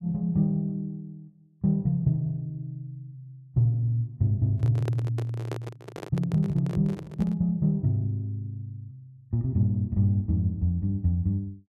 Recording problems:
handling noise; from 4.5 to 7.5 s; peak -4 dB vs average level

